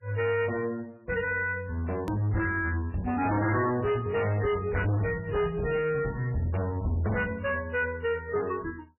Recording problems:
codec artefacts; MP3, log-spectral distance 3 dB, nothing above 2.4 kHz
distorted audio; hard clipping, uneven, signal-to-distortion ratio 7 dB
click at an edit; at 2 s

